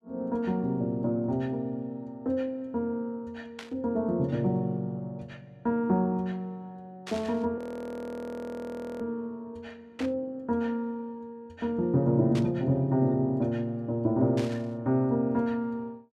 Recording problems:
burst of static; 5 times, first at 3.5 s; peak -7 dB vs average level
audio freezing; at 7.5 s for 1.5 s

